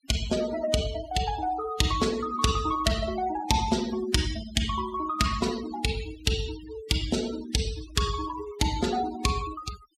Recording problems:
noise reduction artefacts; signal-to-artefact ratio 13 dB

